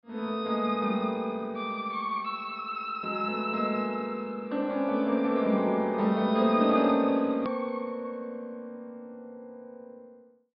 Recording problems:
treble cut off; nothing above 5.5 kHz
edit click; at 7.5 s

